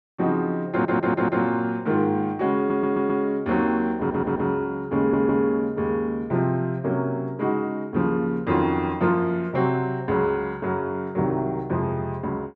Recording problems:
stutter; 4 times, first at 0.5 s

